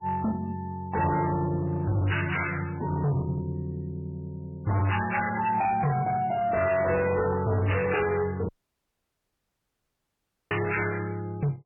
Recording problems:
codec artefacts; MP3, log-spectral distance 4 dB, nothing above 2.9 kHz
distortion; hard clipping, signal-to-distortion ratio 7 dB
audio cutting out; at 8.5 s for 2 s

